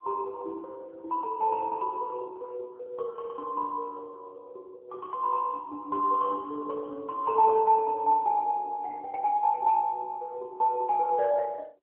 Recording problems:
phone line; 300 Hz to 2.3 kHz, AMR-NB

